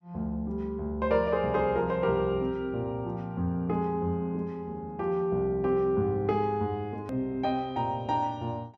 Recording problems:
click at an edit; at 7 s

